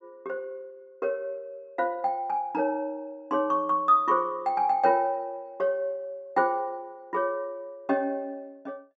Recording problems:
low-pass filter; nothing above 8 kHz

